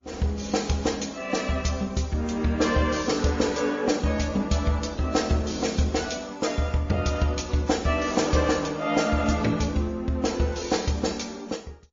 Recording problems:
lossy codec; Opus, then MP3, log-spectral distance 5 dB, nothing above 6.7 kHz

